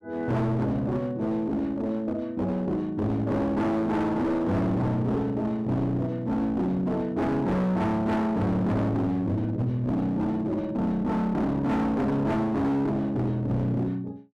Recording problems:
distorted audio; hard clipping, uneven, signal-to-distortion ratio 6 dB

